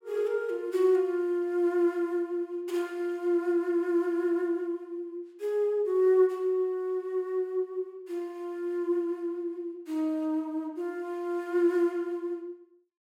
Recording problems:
none

